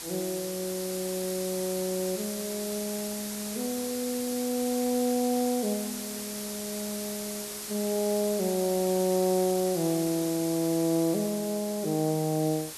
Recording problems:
background hiss; SNR 6 dB

